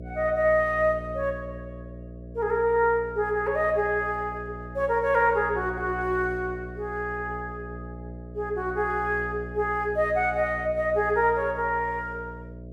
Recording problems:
electrical hum; 60 Hz, harmonics up to 660 Hz, SNR 14 dB

